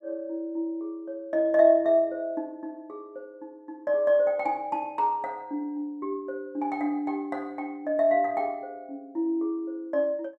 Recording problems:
none

